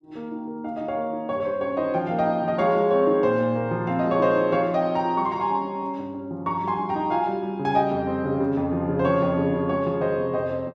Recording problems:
none

